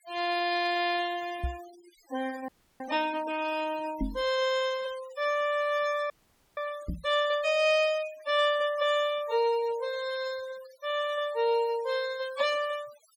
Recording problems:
denoising artefacts; signal-to-artefact ratio 18 dB
microphone bump; at 1.5 s, at 4 s and at 7 s; peak +1 dB vs average level
audio freezing; at 2.5 s and at 6 s

